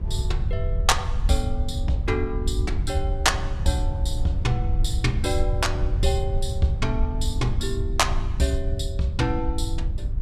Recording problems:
electrical hum; 50 Hz, harmonics up to 700 Hz, SNR 21 dB
rumble; below 80 Hz, SNR 1 dB
wind on the microphone; below 280 Hz, SNR 18 dB

